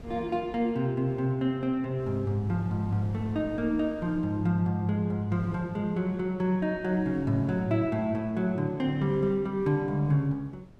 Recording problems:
wind noise; below 280 Hz, SNR 20 dB

